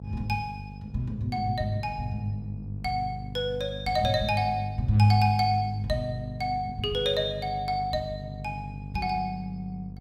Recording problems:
hum; 50 Hz, harmonics up to 500 Hz, SNR 11 dB

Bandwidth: 16 kHz